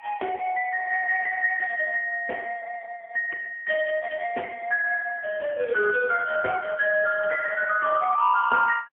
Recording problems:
phone line; 280 Hz to 3.1 kHz, AMR-NB, then MP3

